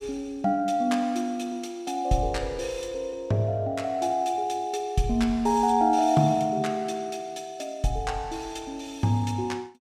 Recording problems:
none

